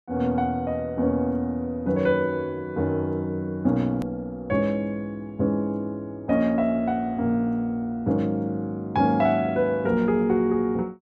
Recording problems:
hard cut with a click; at 4 s

